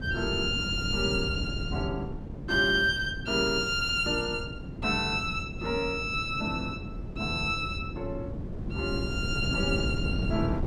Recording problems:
wind noise; below 230 Hz, SNR 7 dB

